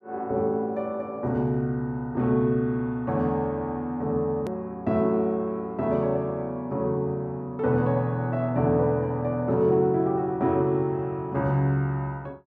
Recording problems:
edit click; at 4.5 s

